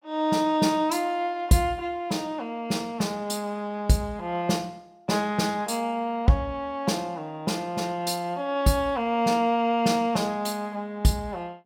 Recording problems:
none

